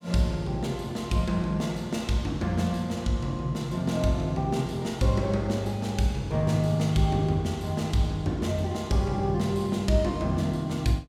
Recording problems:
none

